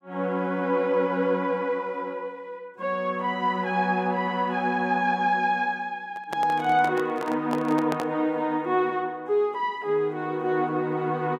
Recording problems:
handling noise; from 6 to 8 s; peak -2 dB vs average level

